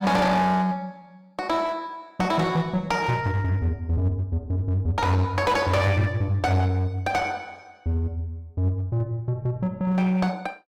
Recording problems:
distorted audio; hard clipping, uneven, signal-to-distortion ratio 10 dB

